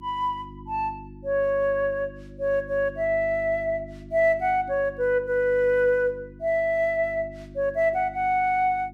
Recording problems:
hum; 50 Hz, harmonics up to 350 Hz, SNR 19 dB

